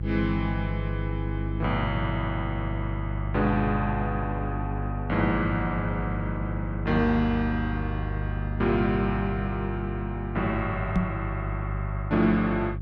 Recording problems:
hum; 50 Hz, harmonics up to 350 Hz, SNR 3 dB
microphone thump; at 11 s; peak +7 dB vs average level

